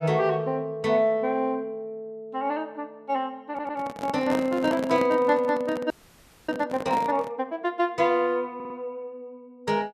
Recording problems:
stutter; at 3.5 s and at 8.5 s
handling noise; from 3.5 to 7.5 s; peak -1 dB vs average level
audio freezing; at 6 s for 0.5 s

